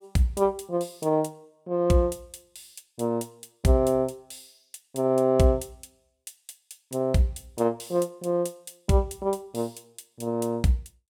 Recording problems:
none

